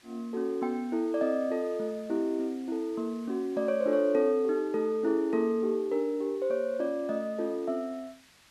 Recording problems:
background hiss; SNR 27 dB

